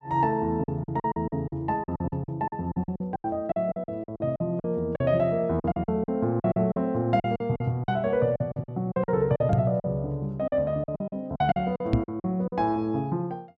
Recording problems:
packet loss; 15% of the sound replaced, filled with silence
knock on the microphone; at 9.5 s and at 12 s; peak +9 dB vs average level

